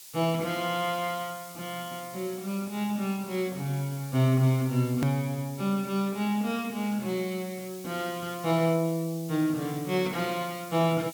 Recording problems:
background hiss; SNR 16 dB
hard cut with a click; at 5 s

